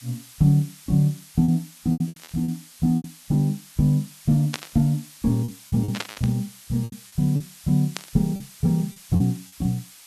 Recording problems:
background hiss; slope +3 dB per octave, SNR 20 dB
lost packets; 10% of the sound replaced, filled with repeated pitch periods
static burst; 4 times, first at 2 s; peak 0 dB vs average level

